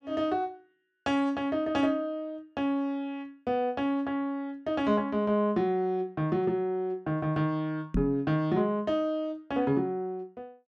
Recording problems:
microphone thump; at 8 s; peak +4 dB vs average level

